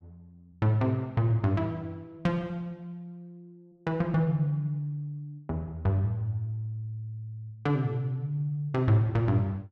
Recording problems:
none

